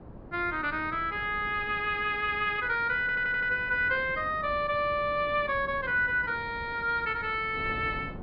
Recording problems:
treble missing; nothing above 5.5 kHz
wind on the microphone; below 420 Hz, SNR 17 dB
stutter; at 3 s

